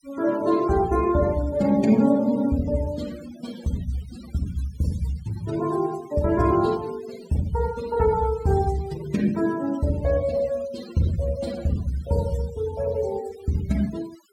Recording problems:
denoising artefacts; signal-to-artefact ratio 19 dB

